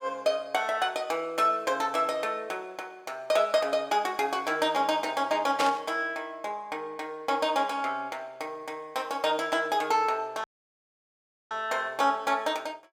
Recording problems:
burst of static; at 5.5 s; peak +1 dB vs average level
audio cutting out; at 10 s for 1 s

